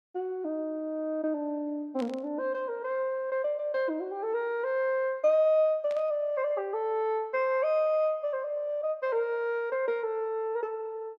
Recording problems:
burst of static; at 2 s and at 6 s; peak -13 dB vs average level

